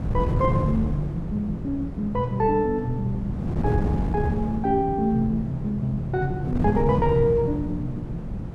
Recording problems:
wind on the microphone; below 200 Hz, SNR 4 dB

